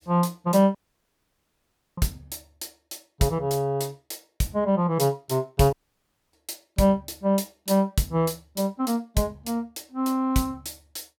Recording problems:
audio cutting out; at 1 s for 1 s and at 5.5 s for 0.5 s

